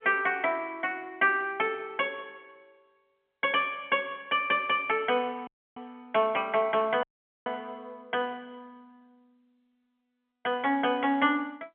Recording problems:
telephone audio; 240 Hz to 3.2 kHz, G.711
dropout; at 5.5 s and at 7 s

